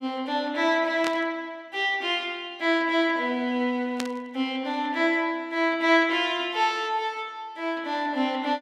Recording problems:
burst of static; at 1 s and at 4 s; peak -2 dB vs average level

